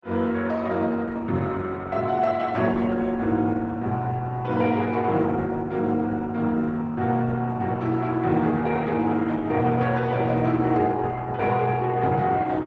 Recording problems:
codec artefacts; Opus, log-spectral distance 3 dB

